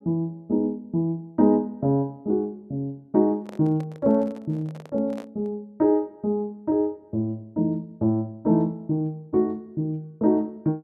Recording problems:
handling noise; from 3.5 to 5.5 s; peak -11 dB vs average level

